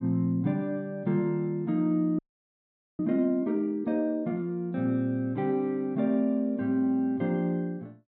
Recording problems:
audio freezing; at 2 s for 1 s

